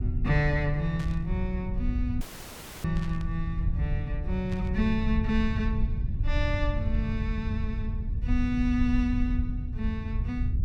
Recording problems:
low-frequency rumble; below 92 Hz, SNR 0 dB
static burst; at 1 s, at 3 s and at 4.5 s; peak -10 dB vs average level
audio cutting out; at 2 s for 0.5 s

